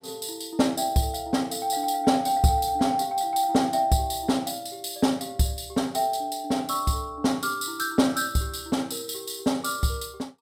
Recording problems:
none

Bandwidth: 16.5 kHz